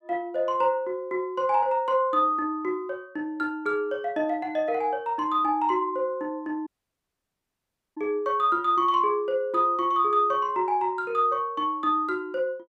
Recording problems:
dropout; at 6.5 s for 1.5 s

